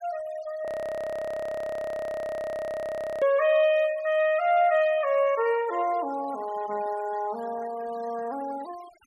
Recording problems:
denoising artefacts; signal-to-artefact ratio 20 dB
audio freezing; at 0.5 s for 2.5 s

